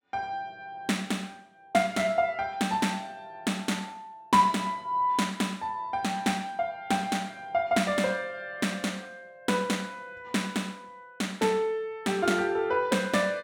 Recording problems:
none

